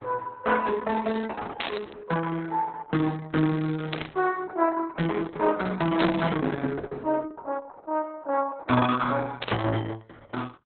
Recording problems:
lossy codec; Opus, log-spectral distance 4 dB, nothing above 3.8 kHz
static burst; 4 times, first at 1.5 s; peak +3 dB vs average level

